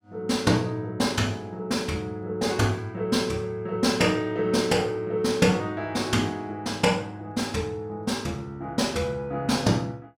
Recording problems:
none

